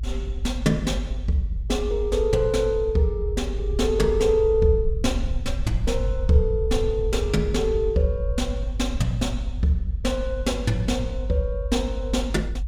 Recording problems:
low-frequency rumble; below 64 Hz, strongest tone 48 Hz, SNR 5 dB

